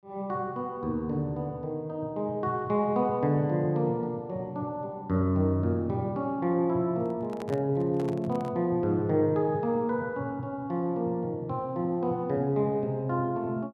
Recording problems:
handling noise; from 7 to 8.5 s; peak -8 dB vs average level

